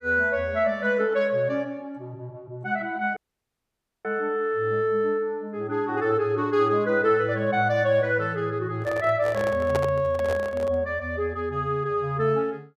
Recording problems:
dropout; at 3 s for 1 s
microphone handling noise; from 9 to 11 s; peak 0 dB vs average level

